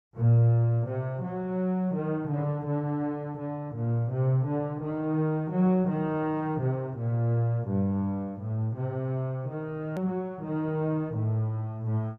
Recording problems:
edit click; at 10 s

